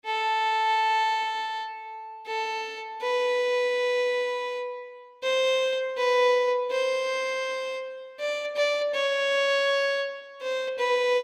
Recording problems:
none

